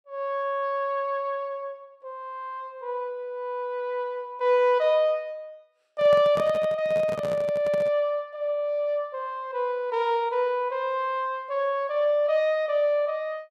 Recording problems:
handling noise; from 6 to 8 s; peak -5 dB vs average level

